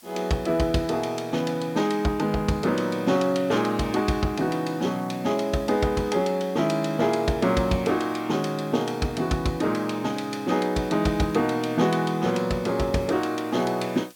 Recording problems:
hiss; slope 0 dB per octave, SNR 26 dB

